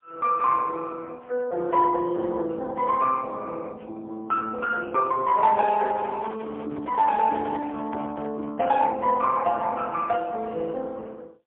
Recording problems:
phone line; 260 Hz to 2.3 kHz, AMR-NB, then MP3
microphone handling noise; from 5.5 to 8.5 s; peak -7 dB vs average level

